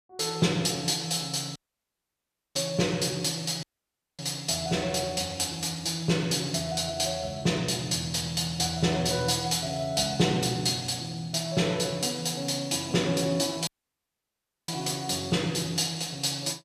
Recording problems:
dropout; at 1.5 s for 1 s, at 3.5 s for 0.5 s and at 14 s for 1 s

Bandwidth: 14.5 kHz